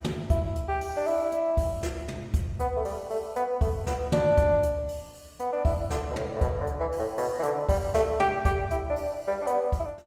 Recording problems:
codec artefacts; Opus, log-spectral distance 3 dB

